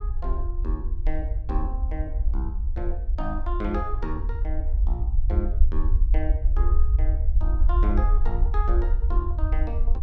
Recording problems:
low-frequency rumble; below 58 Hz, SNR -9 dB

